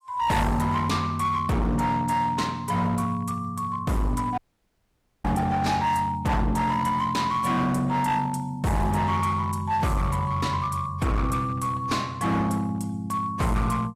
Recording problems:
lossy codec; AAC, log-spectral distance 2 dB, nothing above 14.7 kHz
distorted audio; hard clipping, uneven, signal-to-distortion ratio 7 dB
dropout; at 4.5 s for 1 s

